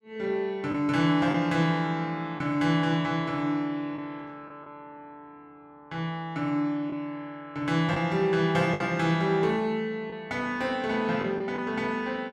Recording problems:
packet loss; 3% of the sound replaced, filled with the last packet

